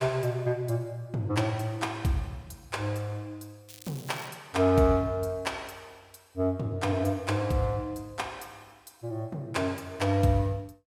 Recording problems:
crackling; at 3.5 s; loose cable, SNR 18 dB

